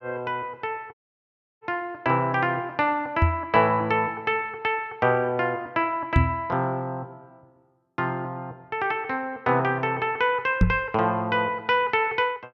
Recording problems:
audio cutting out; at 1 s for 0.5 s
microphone thump; at 3 s, at 6 s and at 11 s; peak +8 dB vs average level

